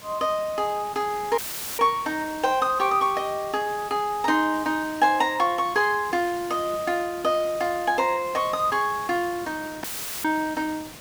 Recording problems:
hiss; slope -2 dB per octave, SNR 17 dB
dropout; at 1.5 s and at 10 s; filled with static

